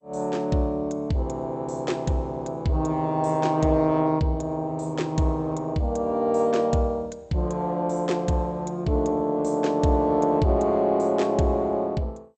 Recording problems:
lossy compression; MP2, log-spectral distance 2 dB, nothing above 8 kHz

